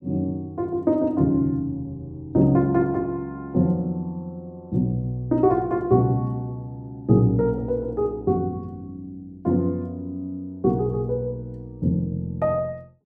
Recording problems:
none

